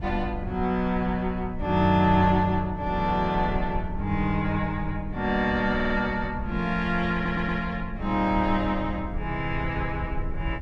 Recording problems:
low-frequency rumble; below 84 Hz, SNR 11 dB
stutter; at 6 s and at 7 s

